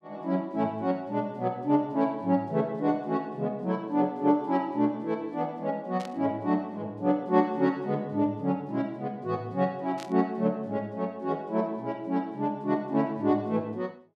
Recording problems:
static burst; at 6 s and at 10 s; peak -10 dB vs average level

